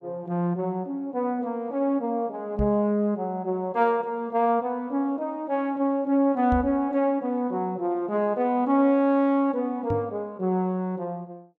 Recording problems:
microphone thump; at 2.5 s, at 6.5 s and at 10 s; peak 0 dB vs average level

